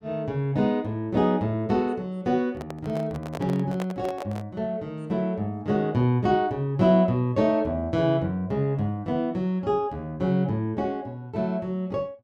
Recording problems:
handling noise; from 2.5 to 4.5 s; peak -5 dB vs average level

